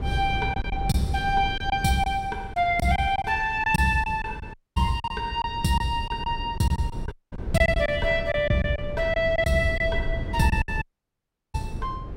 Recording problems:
rumble; below 140 Hz, SNR 10 dB
packet loss; 8% of the sound replaced, filled with silence
dropout; at 4.5 s, at 7 s and at 11 s for 0.5 s

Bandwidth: 16 kHz